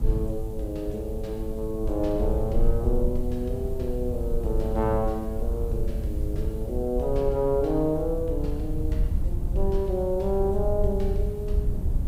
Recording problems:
hiss; slope +2 dB per octave, SNR 26 dB
low-frequency rumble; below 72 Hz, SNR 2 dB

